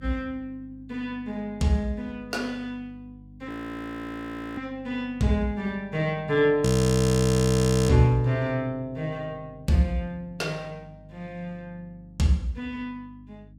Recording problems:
hum; 50 Hz, harmonics up to 450 Hz, SNR 23 dB
frozen audio; at 3.5 s for 1 s and at 6.5 s for 1 s

